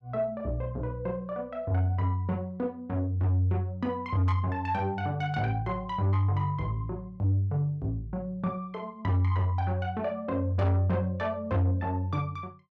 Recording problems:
distortion; soft clipping, signal-to-distortion ratio 12 dB

